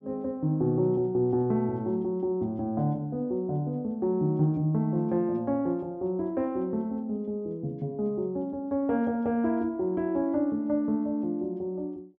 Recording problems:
none

